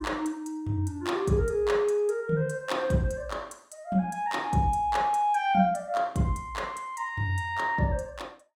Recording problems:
none

